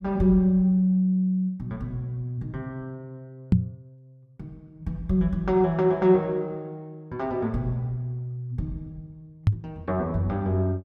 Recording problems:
microphone bump; at 3.5 s and at 9.5 s; peak +10 dB vs average level

